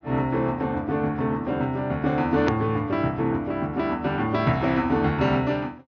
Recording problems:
treble missing; nothing above 6.5 kHz
edit click; at 2.5 s

